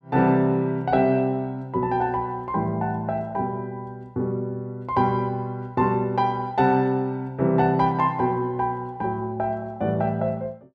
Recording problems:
none

